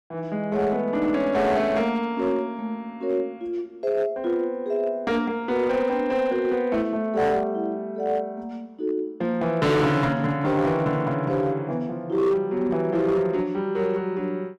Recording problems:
distorted audio; hard clipping, signal-to-distortion ratio 12 dB

